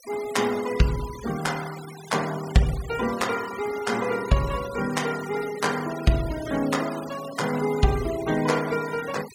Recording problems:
denoising artefacts; signal-to-artefact ratio 14 dB

